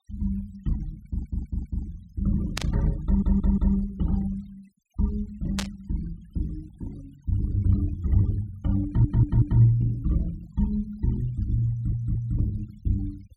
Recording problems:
noise reduction artefacts; signal-to-artefact ratio 26 dB
audio stuttering; 4 times, first at 1 s
static burst; at 2.5 s and at 5.5 s; peak +1 dB vs average level

